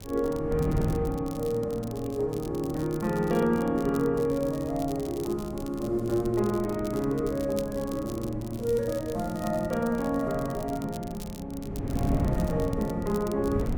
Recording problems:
wind noise; below 240 Hz, SNR 8 dB
crackle; vinyl, SNR 19 dB

